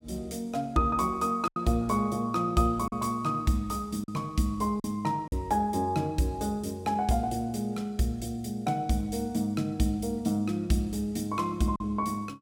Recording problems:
packet loss; 2% of the sound replaced, filled with silence

